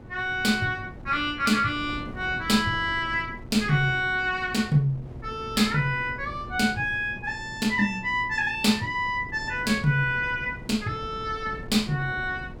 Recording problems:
hum; 60 Hz, harmonics up to 960 Hz, SNR 22 dB
wind on the microphone; below 280 Hz, SNR 17 dB

